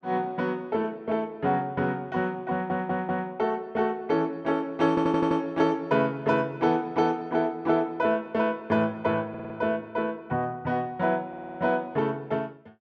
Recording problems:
stutter; 4 times, first at 2.5 s

